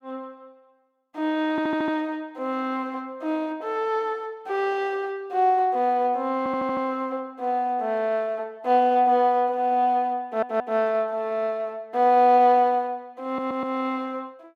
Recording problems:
audio stuttering; 4 times, first at 1.5 s

